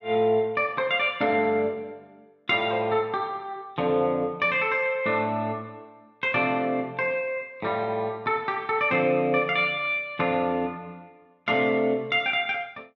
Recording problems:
none

